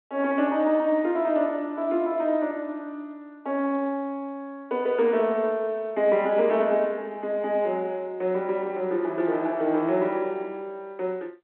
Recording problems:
telephone audio; 220 Hz to 3.6 kHz, G.711

